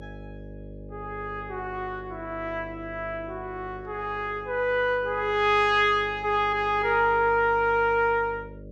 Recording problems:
mains hum; 50 Hz, harmonics up to 600 Hz, SNR 18 dB

